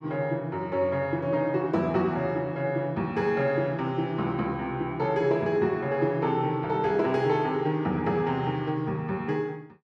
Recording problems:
none

